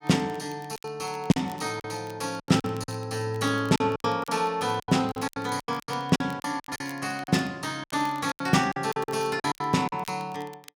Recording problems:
crackle; vinyl, SNR 23 dB
lost packets; 15% of the sound replaced, filled with silence

